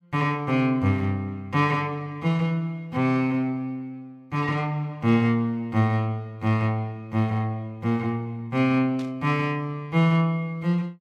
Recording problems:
static burst; at 9 s; peak -15 dB vs average level

